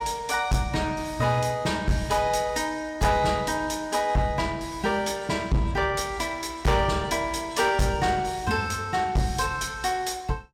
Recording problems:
distortion; hard clipping, signal-to-distortion ratio 10 dB

